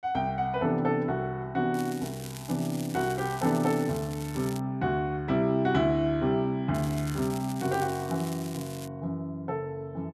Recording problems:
crackling; from 1.5 to 4.5 s and from 7 to 9 s; loose cable, SNR 15 dB

